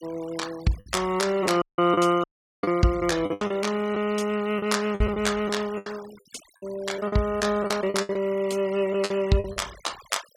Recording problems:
denoising artefacts; signal-to-artefact ratio 19 dB
packet loss; 9% of the sound replaced, filled with the last packet
dropout; at 1.5 s and at 2 s

